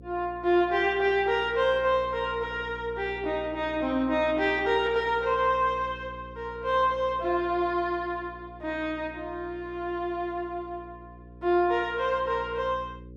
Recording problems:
hum; 60 Hz, harmonics up to 540 Hz, SNR 19 dB

